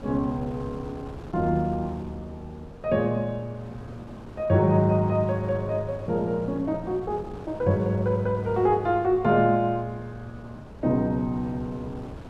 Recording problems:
wind on the microphone; below 490 Hz, SNR 17 dB

